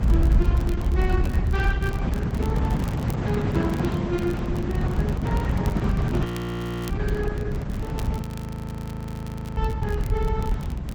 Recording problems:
lossy compression; Opus, log-spectral distance 2 dB, nothing above 19.5 kHz
low-frequency rumble; below 78 Hz, SNR -6 dB
wind noise; below 260 Hz, SNR -3 dB
crackling; vinyl, SNR 15 dB
frozen audio; at 6.5 s for 0.5 s and at 8 s for 1.5 s

